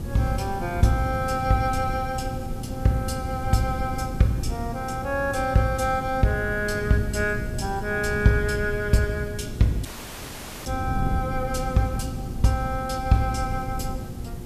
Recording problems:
hum; 60 Hz, harmonics up to 1.2 kHz, SNR 15 dB
background hiss; slope -1 dB per octave, SNR 24 dB
wind on the microphone; below 170 Hz, SNR 8 dB
audio cutting out; at 10 s for 1 s

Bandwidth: 14.5 kHz